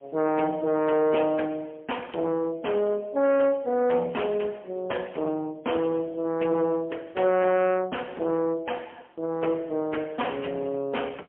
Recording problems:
telephone audio; 370 Hz to 3.2 kHz, AMR-NB, then MP3
distortion; soft clipping, signal-to-distortion ratio 13 dB

